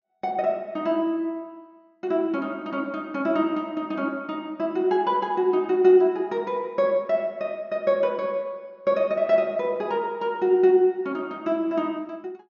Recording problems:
treble missing; nothing above 6.7 kHz

